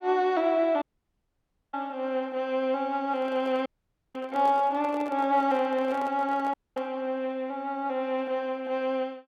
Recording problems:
dropout; at 1 s for 1 s, at 3.5 s and at 6.5 s
handling noise; from 3 to 7 s; peak -9 dB vs average level

